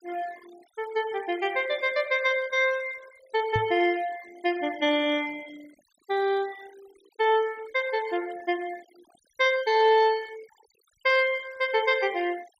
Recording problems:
noise reduction artefacts; signal-to-artefact ratio 22 dB
microphone bump; at 3.5 s; peak -2 dB vs average level

